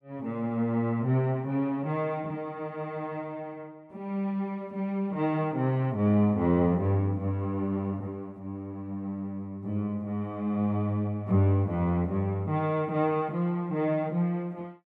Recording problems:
none

